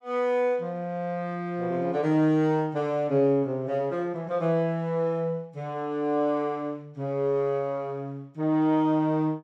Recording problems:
none

